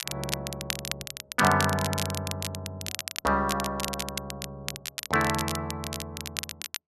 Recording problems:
crackling; vinyl, SNR 5 dB

